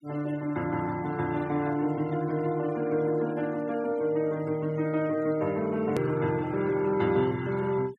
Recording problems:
noise reduction artefacts; signal-to-artefact ratio 21 dB
click at an edit; at 6 s

